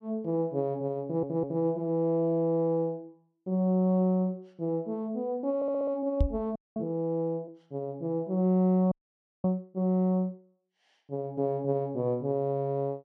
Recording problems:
stutter; at 1 s and at 5.5 s
knock on the microphone; at 6 s; peak +7 dB vs average level
frozen audio; at 6.5 s and at 9 s for 0.5 s

